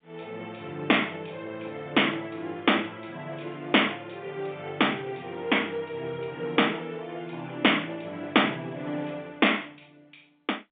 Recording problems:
phone line; 220 Hz to 3.6 kHz, G.711

